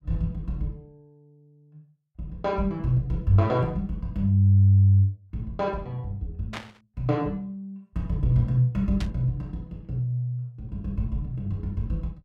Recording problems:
static burst; at 6.5 s and at 9 s; peak -5 dB vs average level

